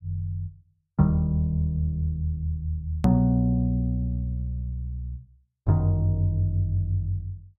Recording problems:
hard cut with a click; at 3 s

